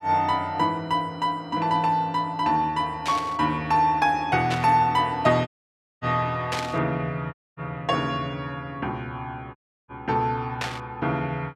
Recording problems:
burst of static; 4 times, first at 3 s; peak 0 dB vs average level
dropout; at 5.5 s for 0.5 s, at 7.5 s and at 9.5 s

